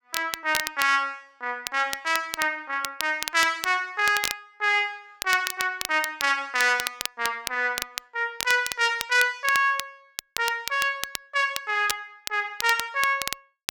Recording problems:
crackling; vinyl, SNR 8 dB

